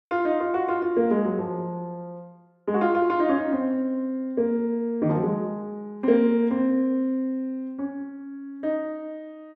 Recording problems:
none

